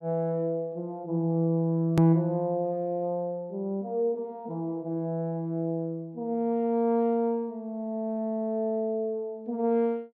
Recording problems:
edit click; at 2 s

